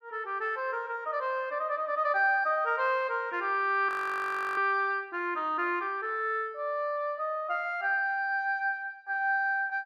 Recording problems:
frozen audio; at 4 s for 0.5 s

